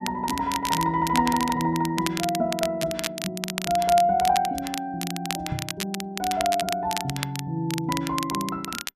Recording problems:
crackling; vinyl, SNR 7 dB
microphone thump; at 5.5 s; peak 0 dB vs average level

